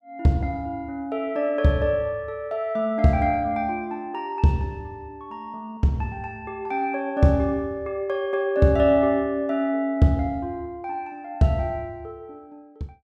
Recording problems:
none

